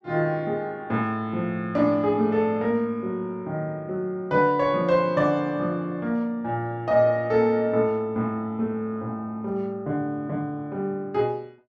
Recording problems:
none

